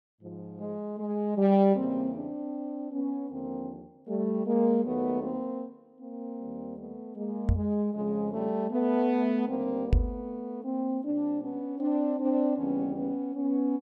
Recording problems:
microphone bump; at 7.5 s and at 10 s; peak +8 dB vs average level

